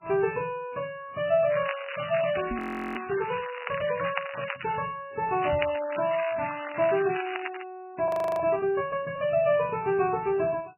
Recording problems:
codec artefacts; MP3, log-spectral distance 11 dB, nothing above 2.7 kHz
crackling; from 1.5 to 5 s and from 5.5 to 7.5 s; loose cable, SNR 9 dB
microphone bump; at 2.5 s and at 5.5 s; peak -2 dB vs average level
audio freezing; at 2.5 s and at 8 s

